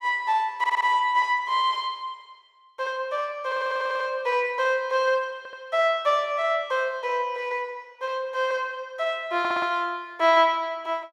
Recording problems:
stutter; 4 times, first at 0.5 s

